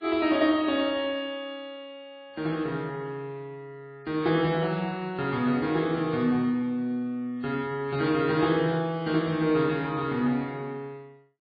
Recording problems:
lossy codec; MP3, log-spectral distance 2 dB, nothing above 4.6 kHz

